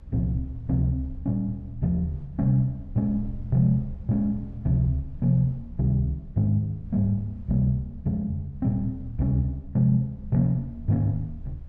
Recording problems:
low-frequency rumble; below 76 Hz, SNR 16 dB

